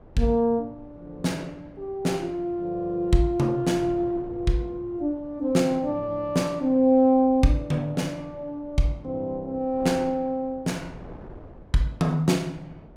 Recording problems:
wind noise; below 450 Hz, SNR 22 dB

